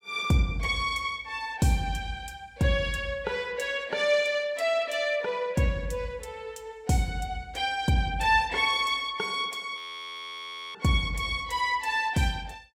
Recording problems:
audio freezing; at 10 s for 1 s

